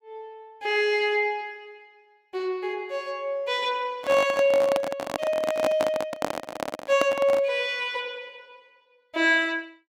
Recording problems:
microphone handling noise; from 4 to 7.5 s; peak +2 dB vs average level

